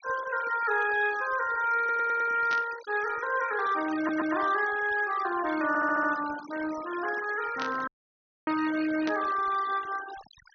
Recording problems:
low-pass filter; nothing above 6.3 kHz
noise reduction artefacts; signal-to-artefact ratio 15 dB
stutter; at 2 s, at 4 s and at 5.5 s
burst of static; at 2.5 s, at 7.5 s and at 9 s; peak -5 dB vs average level
dropout; at 8 s for 0.5 s

